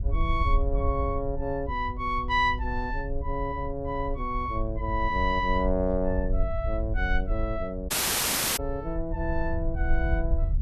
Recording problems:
low-frequency rumble; below 64 Hz, SNR 3 dB
audio cutting out; at 8 s for 0.5 s

